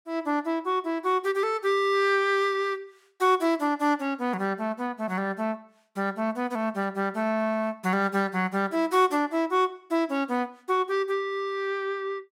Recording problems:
none

